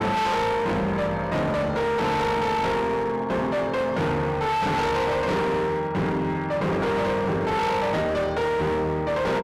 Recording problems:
distorted audio; hard clipping, signal-to-distortion ratio 6 dB

